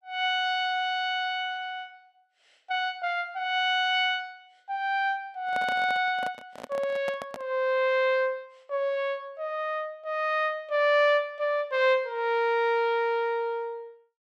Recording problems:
microphone handling noise; from 5.5 to 7.5 s; peak -5 dB vs average level

